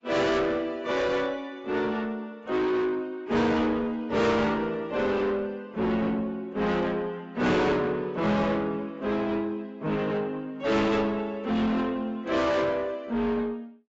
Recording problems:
lossy compression; AAC, log-spectral distance 2 dB, nothing above 7.6 kHz
distortion; soft clipping, signal-to-distortion ratio 7 dB

